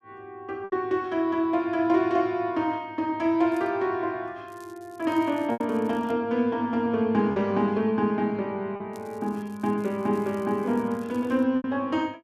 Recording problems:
lost packets; 3% of the sound replaced, filled with repeated pitch periods
crackle; at 3.5 s, from 4.5 to 6 s and from 9 to 11 s; loose cable, SNR 30 dB

